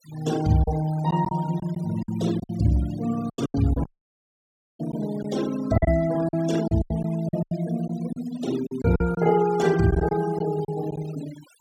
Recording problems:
denoising artefacts; signal-to-artefact ratio 17 dB
packet loss; 9% of the sound replaced, filled with silence
audio cutting out; at 4 s for 1 s

